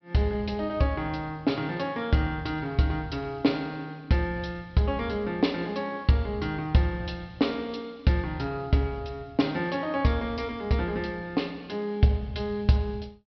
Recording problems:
treble cut off; nothing above 5.5 kHz

